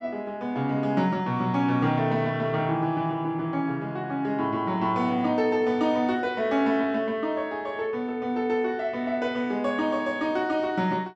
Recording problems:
none

